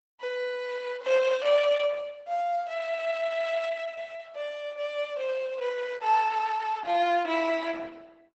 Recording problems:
codec artefacts; Opus, log-spectral distance 4 dB, nothing above 8 kHz

